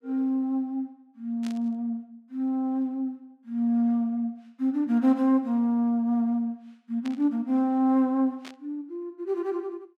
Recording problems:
burst of static; at 1.5 s, at 7 s and at 8.5 s; peak -12 dB vs average level

